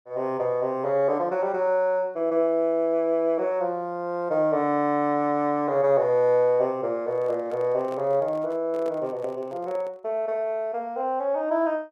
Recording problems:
handling noise; from 7 to 10 s; peak -11 dB vs average level

